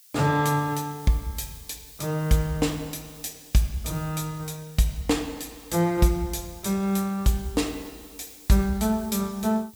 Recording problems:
hiss; SNR 21 dB

